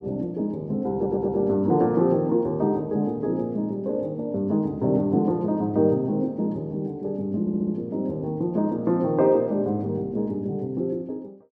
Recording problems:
audio stuttering; at 1 s and at 7.5 s

